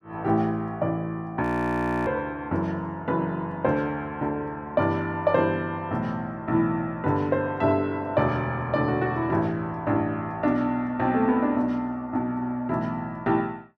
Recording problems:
audio freezing; at 1.5 s for 0.5 s

